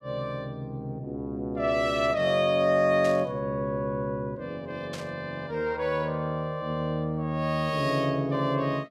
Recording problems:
static burst; at 3 s and at 5 s; peak -8 dB vs average level

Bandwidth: 14.5 kHz